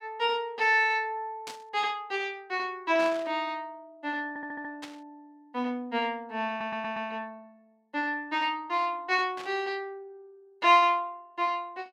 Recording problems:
static burst; 4 times, first at 1.5 s; peak -7 dB vs average level
stutter; at 4.5 s and at 6.5 s

